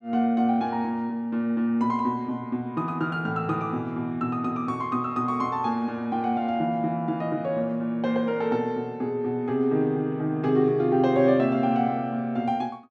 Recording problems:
none

